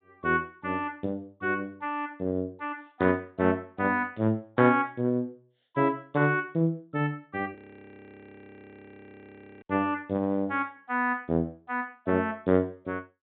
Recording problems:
low-pass filter; nothing above 4 kHz
audio freezing; at 7.5 s for 2 s

